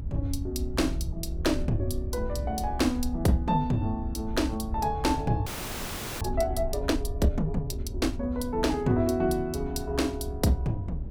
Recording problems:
rumble; below 76 Hz, SNR 7 dB
wind noise; below 230 Hz, SNR 18 dB
frozen audio; at 5.5 s for 1 s

